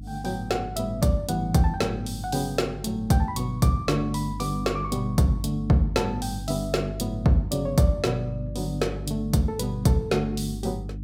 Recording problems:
hum; 50 Hz, harmonics up to 300 Hz, SNR 10 dB

